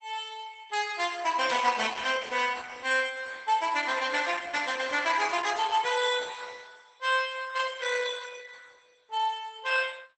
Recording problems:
lossy compression; Opus, log-spectral distance 6 dB, nothing above 8.2 kHz
burst of static; at 1.5 s and at 4.5 s; peak -7 dB vs average level

